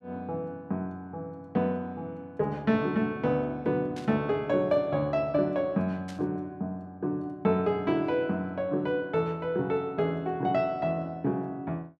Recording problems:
burst of static; at 4 s and at 6 s; peak -12 dB vs average level

